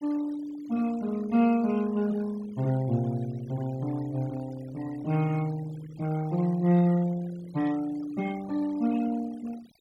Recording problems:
noise reduction artefacts; signal-to-artefact ratio 21 dB

